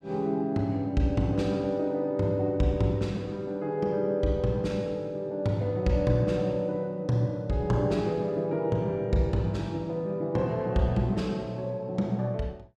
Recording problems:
none

